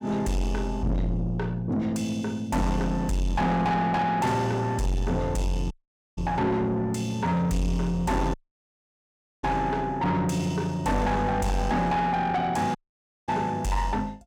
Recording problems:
distorted audio; soft clipping, signal-to-distortion ratio 6 dB
audio cutting out; at 5.5 s, at 8.5 s for 1 s and at 13 s for 0.5 s

